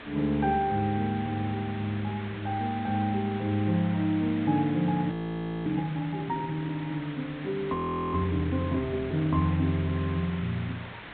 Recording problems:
low-pass filter; nothing above 4 kHz
hiss; SNR 14 dB
frozen audio; at 5 s for 0.5 s and at 7.5 s

